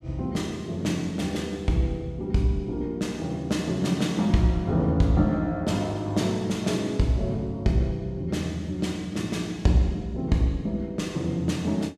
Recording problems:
none

